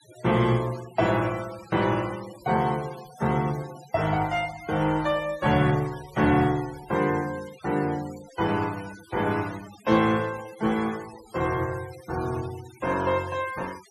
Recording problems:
noise reduction artefacts; signal-to-artefact ratio 18 dB

